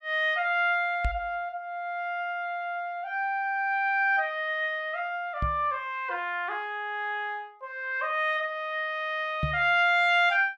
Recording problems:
knock on the microphone; at 1 s, at 5.5 s and at 9.5 s; peak +2 dB vs average level

